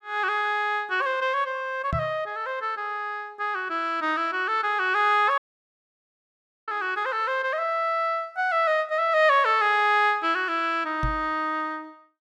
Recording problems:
microphone bump; at 2 s and at 11 s; peak -2 dB vs average level
audio cutting out; at 5.5 s for 1.5 s

